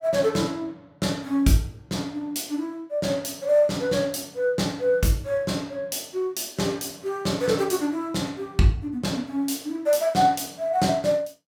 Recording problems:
none

